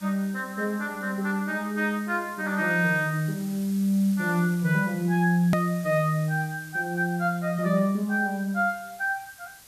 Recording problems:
hiss; slope +1 dB per octave, SNR 20 dB
edit click; at 5.5 s

